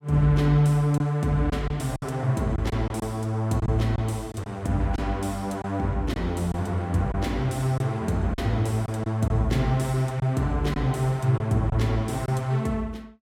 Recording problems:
packet loss; 5% of the sound replaced, filled with silence

